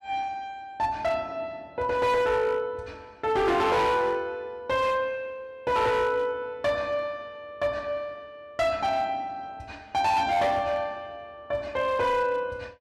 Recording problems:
distortion; hard clipping, signal-to-distortion ratio 10 dB

